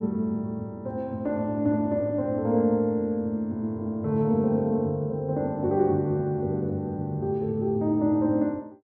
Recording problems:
none

